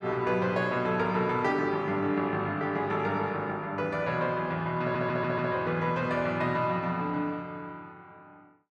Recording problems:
audio stuttering; at 5 s

